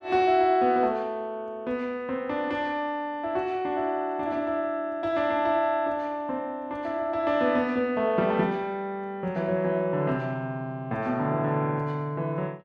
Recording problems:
none

